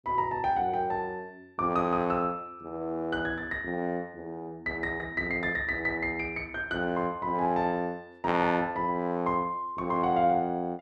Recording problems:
none

